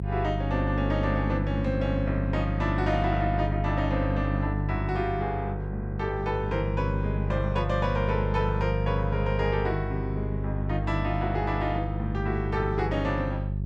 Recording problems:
hum; 50 Hz, harmonics up to 400 Hz, SNR 0 dB

